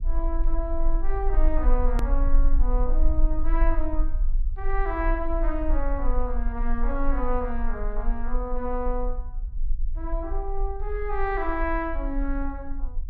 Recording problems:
low-frequency rumble; below 36 Hz, strongest tone 20 Hz, SNR -2 dB
hard cut with a click; at 2 s

